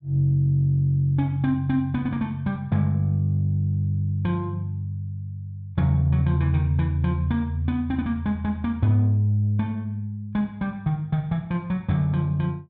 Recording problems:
none

